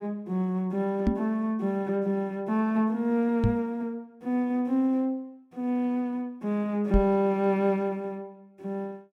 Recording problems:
microphone bump; at 1 s, at 3.5 s and at 7 s; peak +6 dB vs average level

